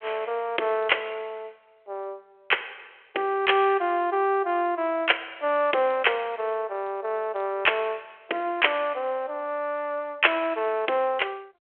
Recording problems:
phone line; 340 Hz to 3.3 kHz, G.726

